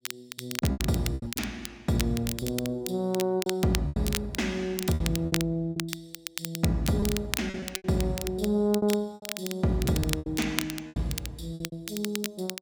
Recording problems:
crackle; vinyl, SNR 7 dB
packet loss; 11% of the sound replaced, filled with repeated pitch periods

